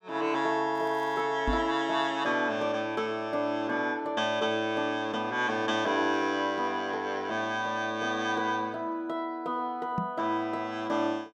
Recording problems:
crackling; at 1 s; loose cable, SNR 30 dB
microphone bump; at 1.5 s and at 10 s; peak +1 dB vs average level

